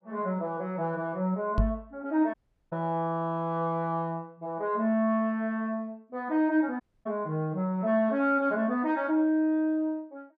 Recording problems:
knock on the microphone; at 1.5 s; peak +6 dB vs average level
audio cutting out; at 2.5 s and at 7 s

